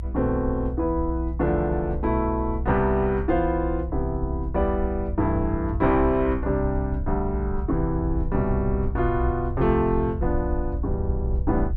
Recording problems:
rumble; below 66 Hz, strongest tone 62 Hz, SNR 5 dB

